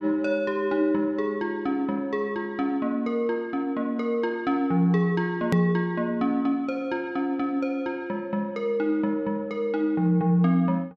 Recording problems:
hard cut with a click; at 5.5 s

